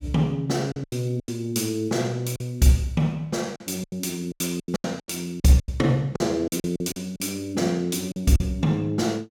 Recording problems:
packet loss; 12% of the sound replaced, filled with silence

